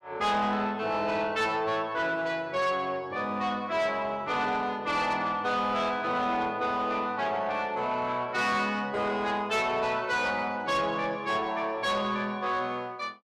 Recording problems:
distortion; soft clipping, signal-to-distortion ratio 12 dB

